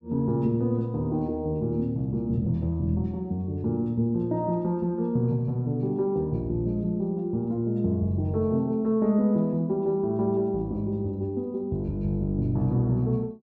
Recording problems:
none

